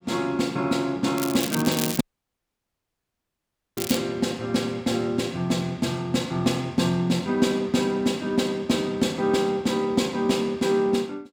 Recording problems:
crackle; from 1 to 4 s; loose cable, SNR 7 dB
audio cutting out; at 2 s for 2 s

